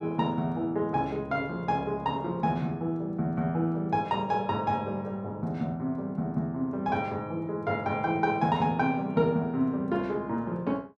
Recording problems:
none

